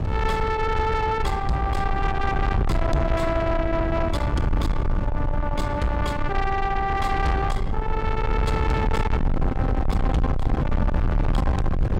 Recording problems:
distorted audio; soft clipping, signal-to-distortion ratio 6 dB
low-frequency rumble; below 150 Hz, SNR 1 dB

